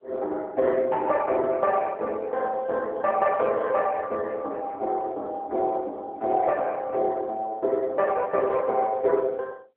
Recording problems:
telephone audio; 280 Hz to 3.6 kHz, AMR-NB

